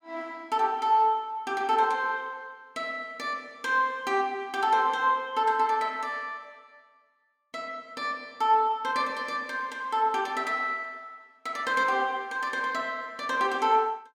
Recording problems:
none

